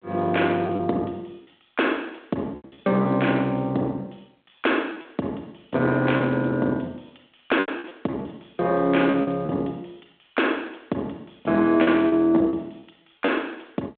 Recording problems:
telephone audio; 220 Hz to 3.6 kHz, G.726
distorted audio; soft clipping, signal-to-distortion ratio 16 dB
lost packets; 7% of the sound replaced, filled with repeated pitch periods

